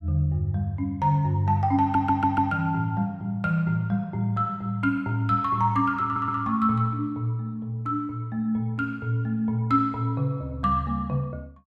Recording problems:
stutter; at 2 s and at 6 s

